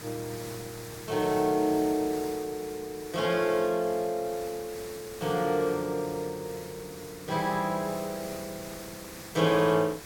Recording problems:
background hiss; slope -3 dB per octave, SNR 14 dB

